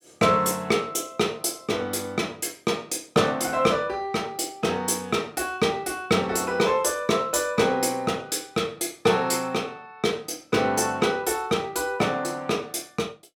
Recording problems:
none

